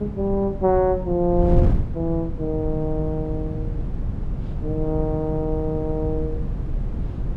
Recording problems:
wind noise; below 140 Hz, SNR 4 dB

